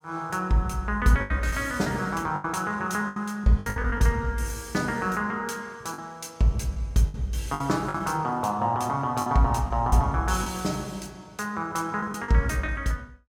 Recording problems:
packet loss; 7% of the sound replaced, filled with the last packet

